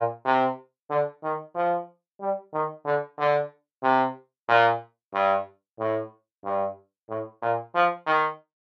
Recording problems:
none

